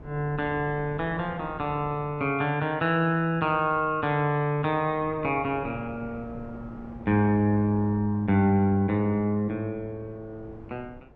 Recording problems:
wind on the microphone; below 450 Hz, SNR 20 dB

